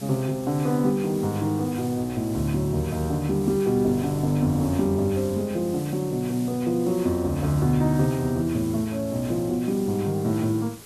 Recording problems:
hiss; SNR 18 dB

